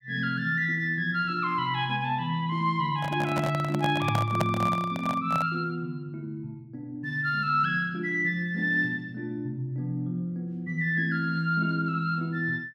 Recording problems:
handling noise; from 3 to 5.5 s; peak +4 dB vs average level

